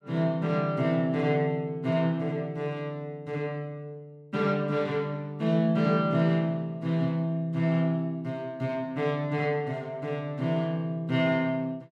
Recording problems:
none

